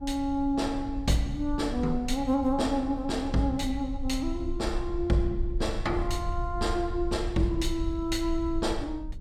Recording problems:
low-frequency rumble; below 60 Hz, SNR 8 dB

